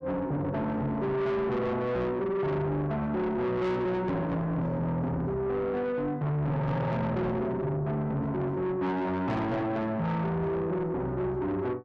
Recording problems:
distorted audio; soft clipping, signal-to-distortion ratio 8 dB

